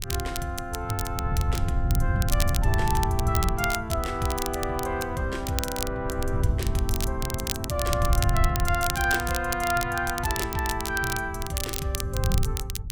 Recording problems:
wind noise; below 110 Hz, SNR 2 dB
crackling; vinyl, SNR 5 dB

